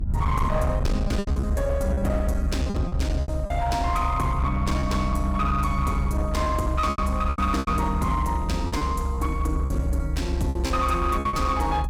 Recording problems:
distortion; hard clipping, signal-to-distortion ratio 12 dB
rumble; below 74 Hz, strongest tone 68 Hz, SNR 2 dB
lost packets; 9% of the sound replaced, filled with repeated pitch periods

